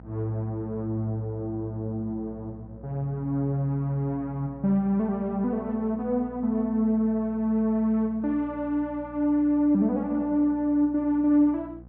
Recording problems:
treble missing; nothing above 5.5 kHz
electrical hum; 60 Hz, harmonics up to 780 Hz, SNR 21 dB

